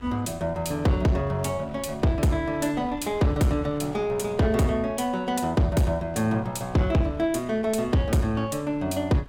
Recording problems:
distortion; soft clipping, signal-to-distortion ratio 10 dB
wind on the microphone; below 460 Hz, SNR 21 dB

